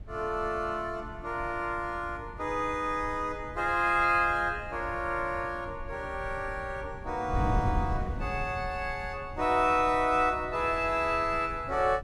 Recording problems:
wind noise; below 130 Hz, SNR 11 dB

